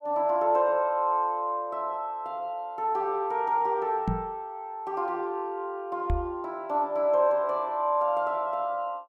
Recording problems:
microphone bump; at 4 s and at 6 s; peak +3 dB vs average level

